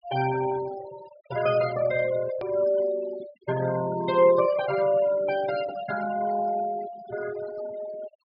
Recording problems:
treble missing; nothing above 5.5 kHz
noise reduction artefacts; signal-to-artefact ratio 14 dB
click at an edit; at 2.5 s

